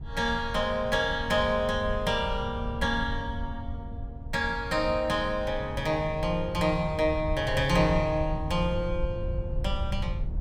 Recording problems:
rumble; below 96 Hz, SNR 8 dB

